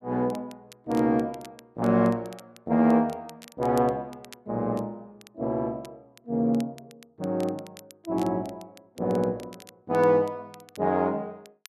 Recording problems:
crackling; vinyl, SNR 25 dB

